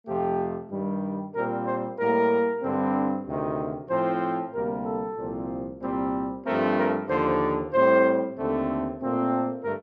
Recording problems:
none

